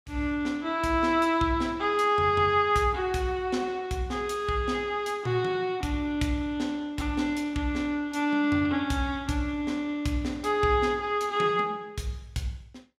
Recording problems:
none

